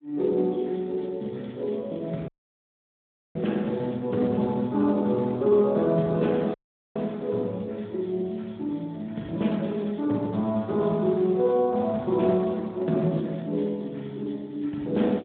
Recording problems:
telephone audio; 130 Hz to 3.4 kHz, Speex
dropout; at 2.5 s for 1 s and at 6.5 s

